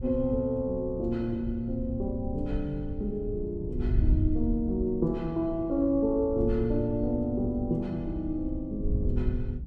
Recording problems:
wind on the microphone; below 94 Hz, SNR 5 dB

